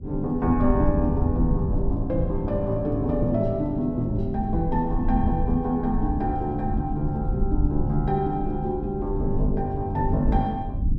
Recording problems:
low-frequency rumble; below 96 Hz, SNR 4 dB

